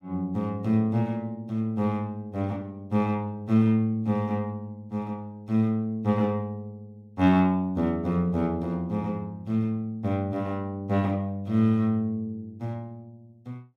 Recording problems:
none

